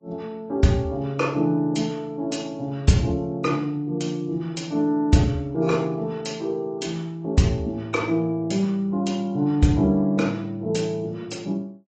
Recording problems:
lossy codec; AAC, log-spectral distance 2 dB, nothing above 7.6 kHz

